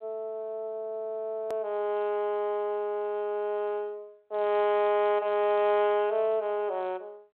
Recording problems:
phone line; 240 Hz to 3.9 kHz, G.726
edit click; at 1.5 s

